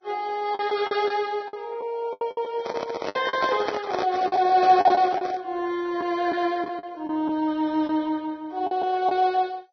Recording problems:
lossy codec; MP2, then Vorbis, log-spectral distance 3 dB
lost packets; 9% of the sound replaced, filled with the last packet
handling noise; from 2.5 to 5.5 s; peak +2 dB vs average level

